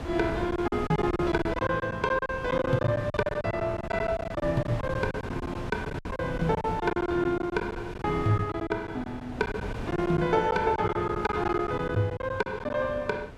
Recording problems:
wind noise; below 540 Hz, SNR 9 dB
packet loss; 15% of the sound replaced, filled with silence

